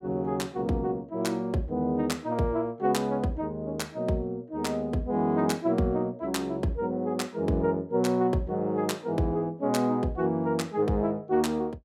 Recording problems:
none

